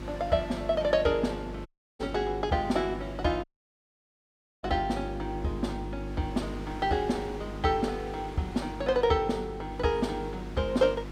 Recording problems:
hum; 50 Hz, harmonics up to 350 Hz, SNR 10 dB
wind on the microphone; below 2.4 kHz, SNR 19 dB
audio cutting out; at 1.5 s and at 3.5 s for 1 s

